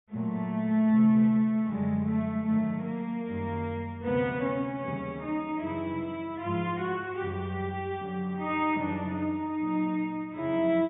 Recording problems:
low-pass filter; nothing above 3.7 kHz

